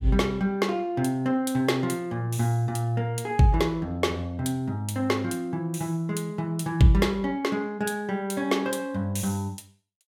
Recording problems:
none

